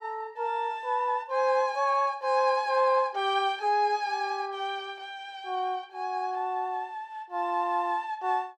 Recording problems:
none

